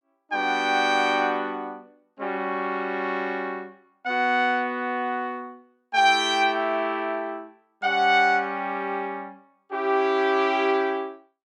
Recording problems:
none

